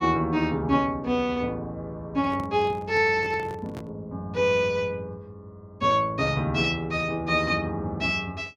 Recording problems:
handling noise; from 2 to 4 s; peak -9 dB vs average level

